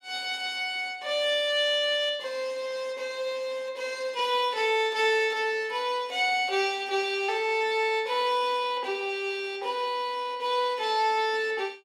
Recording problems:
none

